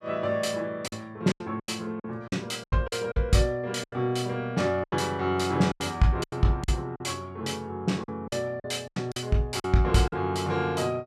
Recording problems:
packet loss; 11% of the sound replaced, filled with silence

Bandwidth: 14.5 kHz